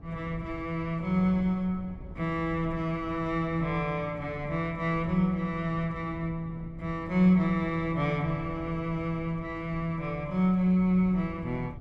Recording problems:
wind on the microphone; below 160 Hz, SNR 16 dB

